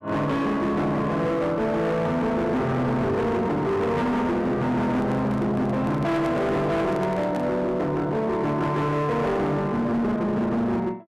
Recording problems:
distorted audio; hard clipping, signal-to-distortion ratio 8 dB
microphone handling noise; from 5 to 7.5 s; peak -8 dB vs average level

